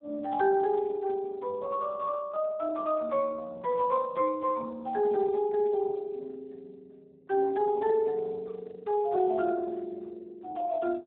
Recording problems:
telephone audio; 240 Hz to 2.2 kHz, Speex

